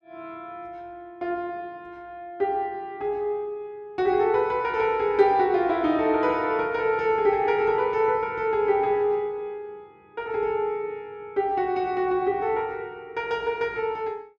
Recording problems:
none

